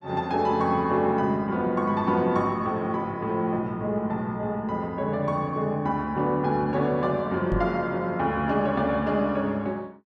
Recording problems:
microphone thump; at 7.5 s; peak 0 dB vs average level

